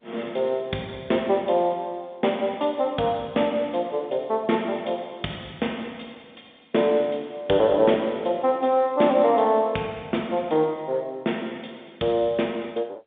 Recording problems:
telephone audio; 130 Hz to 3.7 kHz, G.711

